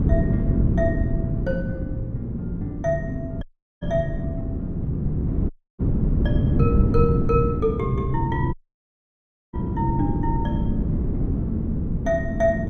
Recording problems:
wind noise; below 210 Hz, SNR -3 dB
dropout; at 3.5 s, at 5.5 s and at 8.5 s for 1 s

